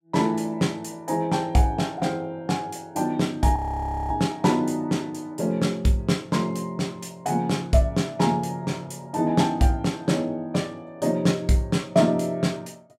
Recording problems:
audio freezing; at 3.5 s for 0.5 s

